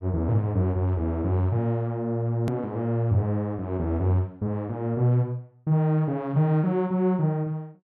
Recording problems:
hard cut with a click; at 2.5 s

